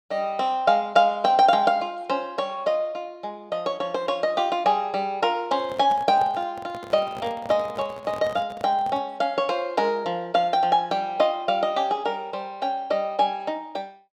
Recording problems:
handling noise; from 5.5 to 9 s; peak -10 dB vs average level

